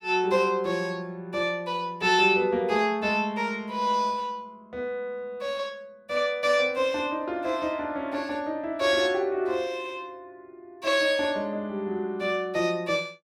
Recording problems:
none

